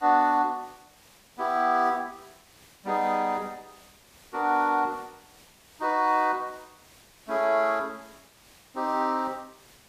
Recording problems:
hiss; slope -2 dB per octave, SNR 27 dB

